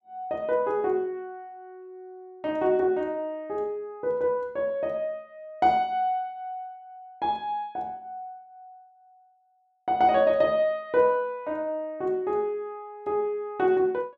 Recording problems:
none

